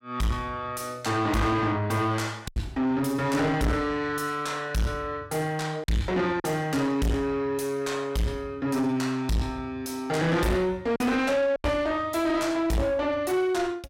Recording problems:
distorted audio; soft clipping, signal-to-distortion ratio 6 dB
packet loss; 2% of the sound replaced, filled with silence

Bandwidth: 16 kHz